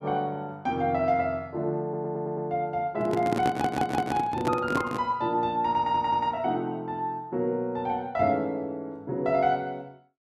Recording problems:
stutter; at 2 s, at 3.5 s and at 6 s
microphone handling noise; from 3 to 5 s; peak +3 dB vs average level

